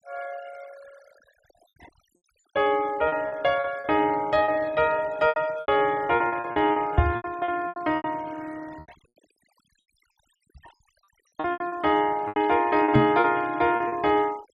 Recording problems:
noise reduction artefacts; signal-to-artefact ratio 23 dB
packet loss; 12% of the sound replaced, filled with repeated pitch periods
knock on the microphone; at 7 s and at 13 s; peak +7 dB vs average level

